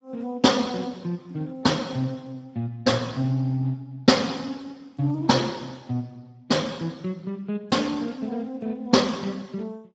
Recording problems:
lossy compression; Speex, log-spectral distance 3 dB, nothing above 7.3 kHz

